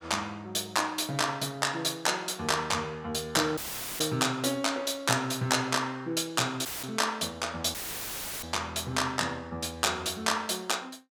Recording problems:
audio cutting out; at 3.5 s, at 6.5 s and at 7.5 s for 0.5 s; filled with static

